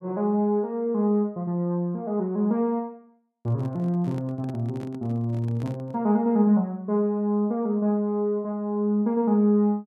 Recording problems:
microphone handling noise; from 3.5 to 6 s; peak -8 dB vs average level

